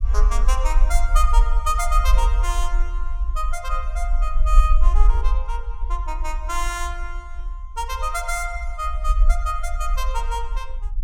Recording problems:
low-frequency rumble; below 44 Hz, SNR -4 dB

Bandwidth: 17 kHz